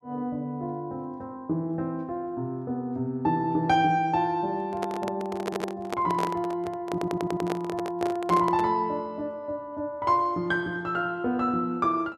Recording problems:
microphone handling noise; from 4.5 to 8.5 s; peak +2 dB vs average level
audio stuttering; at 5.5 s and at 7 s

